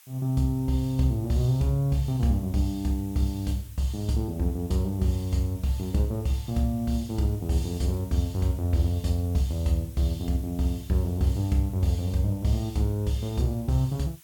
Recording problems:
background hiss; SNR 24 dB

